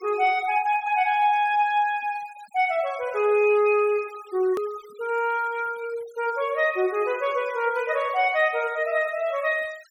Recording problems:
noise reduction artefacts; signal-to-artefact ratio 24 dB
click at an edit; at 4.5 s

